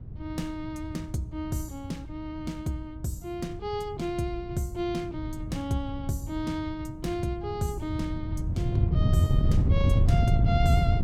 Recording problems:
wind noise; below 140 Hz, SNR -5 dB

